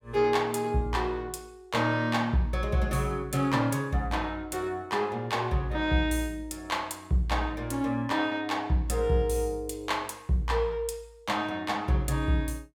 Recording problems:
none

